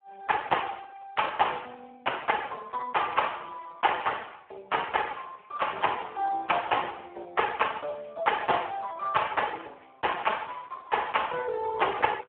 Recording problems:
telephone audio; 280 Hz to 3.4 kHz, Speex

